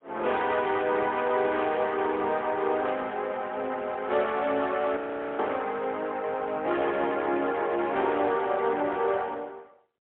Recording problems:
phone line; 280 Hz to 3.4 kHz, AMR-NB, then MP3
frozen audio; at 5 s

